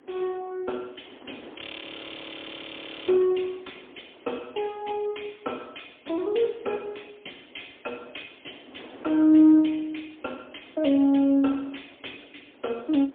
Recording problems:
telephone audio; 220 Hz to 3.6 kHz, AMR-NB, then MP3
wind on the microphone; below 800 Hz, SNR 25 dB
audio freezing; at 1.5 s for 1.5 s

